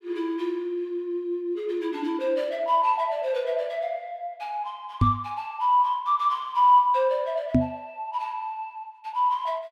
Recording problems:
microphone thump; at 5 s and at 7.5 s; peak +8 dB vs average level

